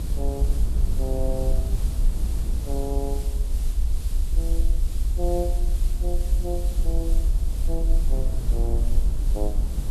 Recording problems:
hiss; slope +1 dB per octave, SNR 10 dB
low-frequency rumble; below 54 Hz, SNR -7 dB
wind on the microphone; below 130 Hz, SNR 1 dB

